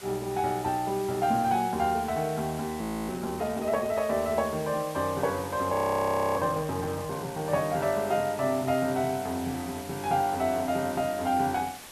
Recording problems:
hiss; slope -1 dB per octave, SNR 15 dB
frozen audio; at 3 s and at 5.5 s for 0.5 s

